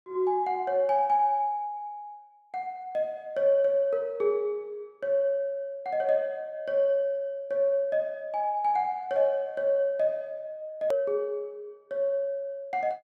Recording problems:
click at an edit; at 11 s

